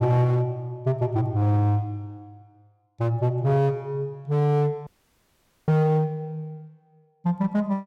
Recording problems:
distortion; hard clipping, uneven, signal-to-distortion ratio 12 dB
dropout; at 5 s for 1 s

